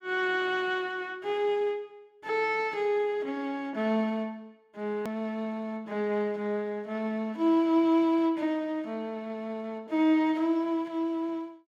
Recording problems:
click at an edit; at 5 s

